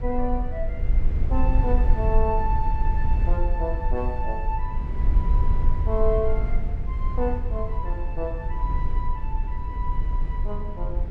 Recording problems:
rumble; below 56 Hz, strongest tone 20 Hz, SNR -4 dB

